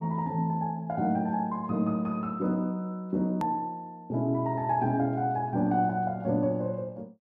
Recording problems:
hard cut with a click; at 3.5 s

